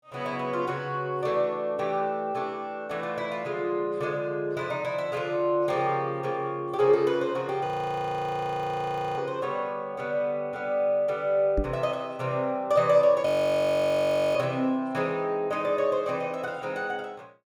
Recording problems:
frozen audio; at 7.5 s for 1.5 s and at 13 s for 1 s
microphone bump; at 12 s; peak +2 dB vs average level

